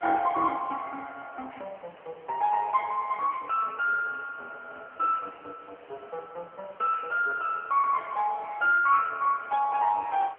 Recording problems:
telephone audio; 340 Hz to 2.8 kHz, AMR-NB
background hiss; SNR 26 dB

